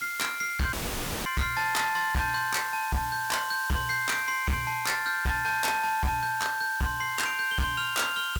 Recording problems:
distorted audio; hard clipping, signal-to-distortion ratio 6 dB
hiss; slope +2 dB per octave, SNR 13 dB
audio cutting out; at 0.5 s for 0.5 s

